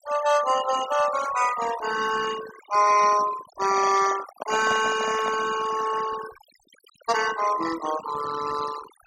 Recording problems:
noise reduction artefacts; signal-to-artefact ratio 9 dB
microphone handling noise; from 3.5 to 5.5 s; peak -4 dB vs average level

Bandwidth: 16 kHz